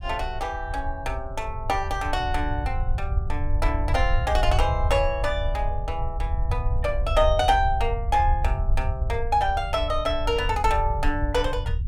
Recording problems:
rumble; below 74 Hz, SNR 3 dB

